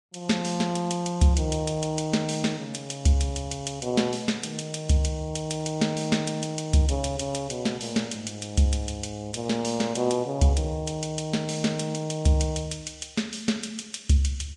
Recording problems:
lossy compression; Vorbis, log-spectral distance 3 dB

